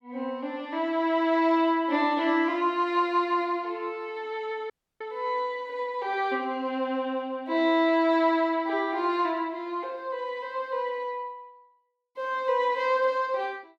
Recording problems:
dropout; at 4.5 s

